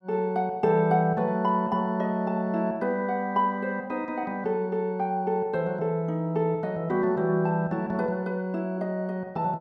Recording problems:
none

